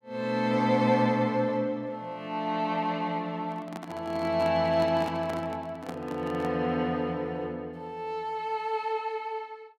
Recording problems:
handling noise; from 3.5 to 6.5 s; peak -5 dB vs average level

